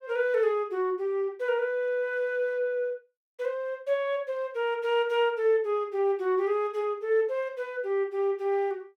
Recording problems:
none

